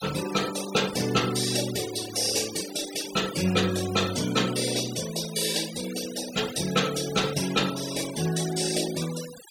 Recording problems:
noise reduction artefacts; signal-to-artefact ratio 10 dB

